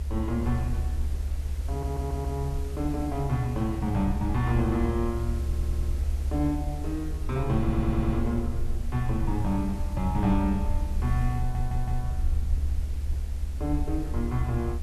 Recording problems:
background hiss; SNR 17 dB
low-frequency rumble; below 72 Hz, SNR 2 dB
stutter; 4 times, first at 1.5 s

